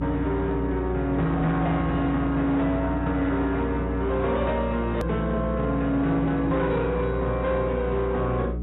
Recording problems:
lossy compression; AAC, log-spectral distance 2 dB, nothing above 13.1 kHz
distortion; hard clipping, signal-to-distortion ratio 12 dB
hum; 60 Hz, harmonics up to 420 Hz, SNR 6 dB
hard cut with a click; at 5 s

